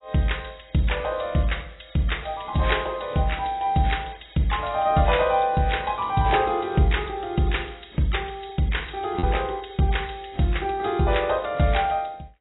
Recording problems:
lossy compression; AAC, log-spectral distance 7 dB, nothing above 3.8 kHz
lost packets; 0.3% of the sound replaced, filled with repeated pitch periods

